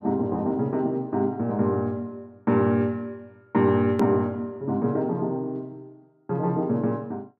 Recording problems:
edit click; at 4 s

